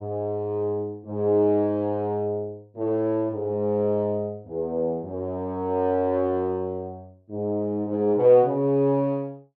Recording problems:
none

